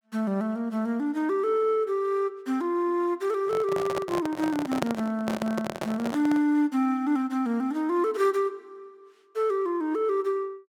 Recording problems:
handling noise; from 3.5 to 6.5 s; peak +3 dB vs average level

